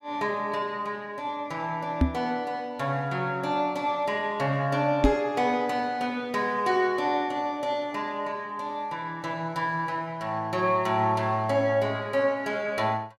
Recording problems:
microphone thump; at 2 s and at 5 s; peak +9 dB vs average level

